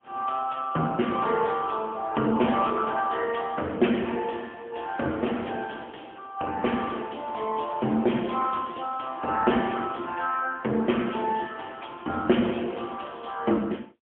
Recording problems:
phone line; 170 Hz to 3.3 kHz, AMR-NB, then MP3

